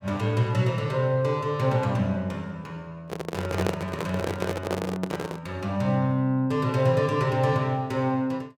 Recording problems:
microphone handling noise; from 3 to 5.5 s; peak +2 dB vs average level

